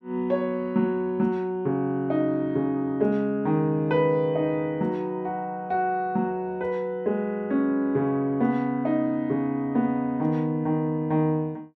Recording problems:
none

